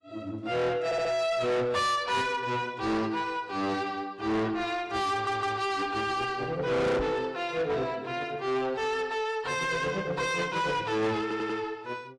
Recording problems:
lossy compression; AAC, log-spectral distance 2 dB, nothing above 11 kHz
distortion; soft clipping, signal-to-distortion ratio 6 dB
audio stuttering; at 1 s, at 5 s and at 11 s
microphone bump; at 7 s; peak -1 dB vs average level

